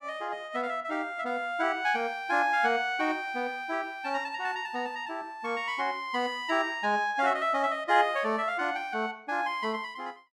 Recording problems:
none

